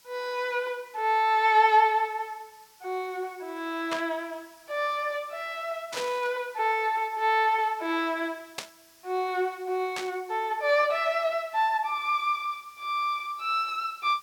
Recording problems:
background hiss; slope +2 dB per octave, SNR 28 dB
burst of static; 4 times, first at 4 s; peak -2 dB vs average level

